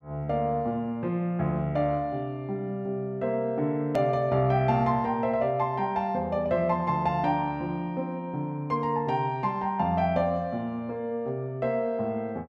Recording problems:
hard cut with a click; at 4 s

